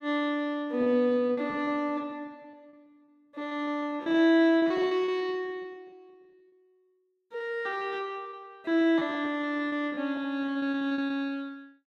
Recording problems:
packet loss; 17% of the sound replaced, filled with repeated pitch periods

